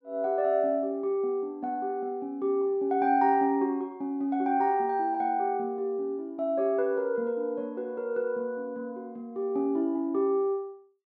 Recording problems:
none

